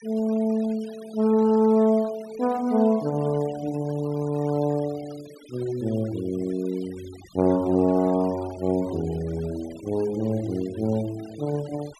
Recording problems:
noise reduction artefacts; signal-to-artefact ratio 22 dB

